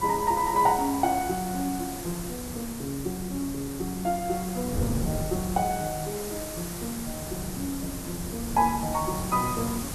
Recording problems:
hiss; SNR 8 dB
wind noise; below 220 Hz, SNR 10 dB

